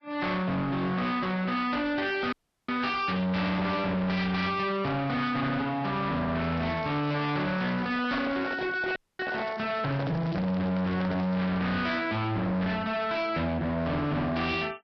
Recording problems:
lossy compression; Vorbis, log-spectral distance 3 dB, nothing above 5.3 kHz
distortion; hard clipping, signal-to-distortion ratio 7 dB
audio cutting out; at 2.5 s and at 9 s
crackle; from 6.5 to 12 s; loose cable, SNR 25 dB
handling noise; from 8 to 12 s; peak -2 dB vs average level

